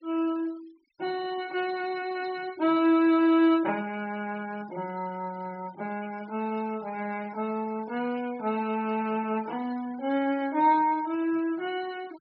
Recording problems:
treble missing; nothing above 5.5 kHz
denoising artefacts; signal-to-artefact ratio 23 dB

